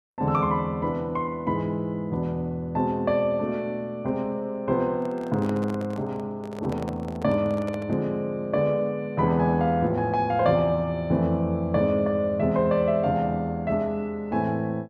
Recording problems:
handling noise; from 5 to 8 s; peak -8 dB vs average level

